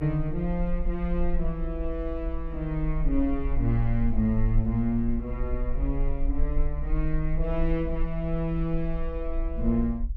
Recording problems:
rumble; below 50 Hz, SNR 3 dB

